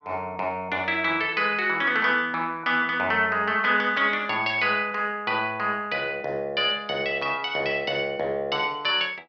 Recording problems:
none

